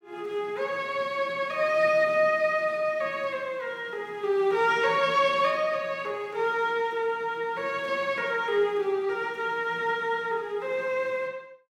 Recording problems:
none

